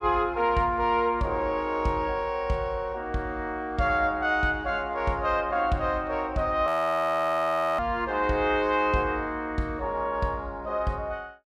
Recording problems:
frozen audio; at 6.5 s for 1 s

